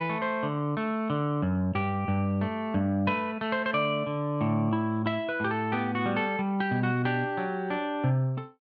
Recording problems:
none

